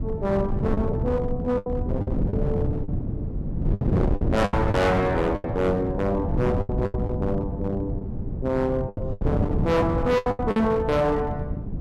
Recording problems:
distorted audio; hard clipping, uneven, signal-to-distortion ratio 7 dB
wind noise; below 220 Hz, SNR 3 dB
packet loss; 11% of the sound replaced, filled with the last packet

